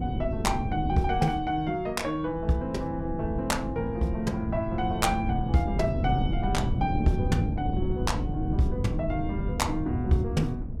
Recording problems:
wind on the microphone; below 180 Hz, SNR 3 dB

